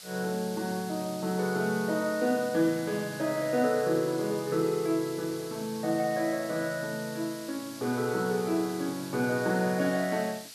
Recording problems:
hiss; slope +3 dB per octave, SNR 14 dB

